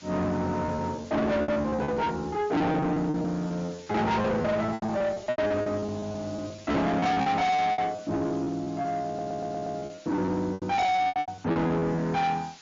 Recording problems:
lossy codec; MP3, log-spectral distance 5 dB, nothing above 6.9 kHz
distorted audio; soft clipping, signal-to-distortion ratio 7 dB
hiss; slope +1 dB per octave, SNR 24 dB
lost packets; 16% of the sound replaced, filled with repeated pitch periods
audio stuttering; at 9 s

